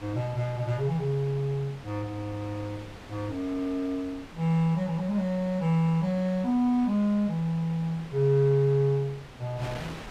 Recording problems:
wind on the microphone; below 2.1 kHz, SNR 18 dB

